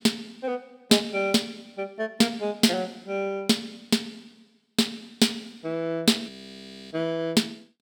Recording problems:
frozen audio; at 6.5 s for 0.5 s

